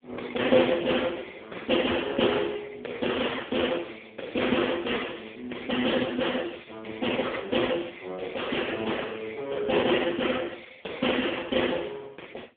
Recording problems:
telephone audio; 260 Hz to 3.5 kHz, AMR-NB

